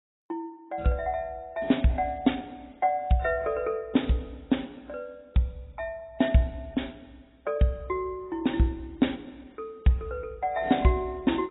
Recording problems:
lossy compression; AAC, log-spectral distance 3 dB, nothing above 3.8 kHz

